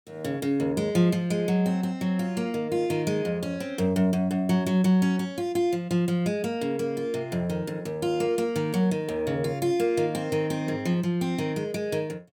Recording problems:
none

